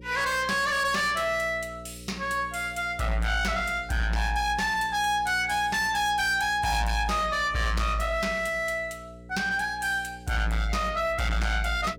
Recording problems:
distortion; soft clipping, signal-to-distortion ratio 7 dB
hum; 60 Hz, harmonics up to 540 Hz, SNR 20 dB

